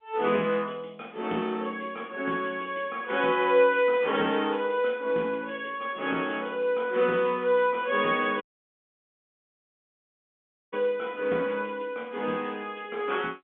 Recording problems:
telephone audio; 220 Hz to 3.5 kHz, G.711
audio cutting out; at 8.5 s for 2.5 s

